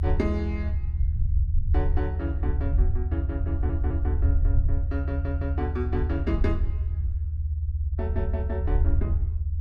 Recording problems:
low-frequency rumble; below 80 Hz, SNR -7 dB
stutter; at 3.5 s and at 5 s

